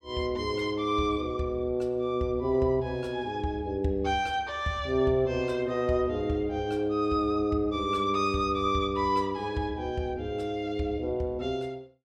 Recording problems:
none

